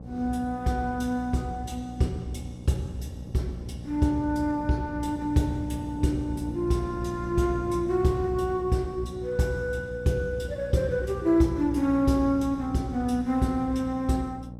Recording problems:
hum; 60 Hz, harmonics up to 840 Hz, SNR 13 dB
wind on the microphone; below 310 Hz, SNR 19 dB

